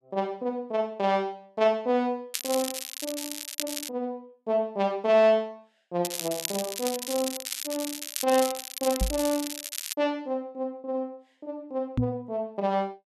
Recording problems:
crackling; from 2.5 to 4 s and from 6 to 10 s; loose cable, SNR 5 dB
microphone thump; at 9 s and at 12 s; peak +6 dB vs average level

